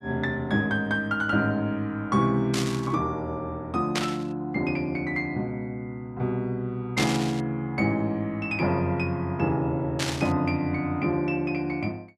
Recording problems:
static burst; 4 times, first at 2.5 s; peak +3 dB vs average level

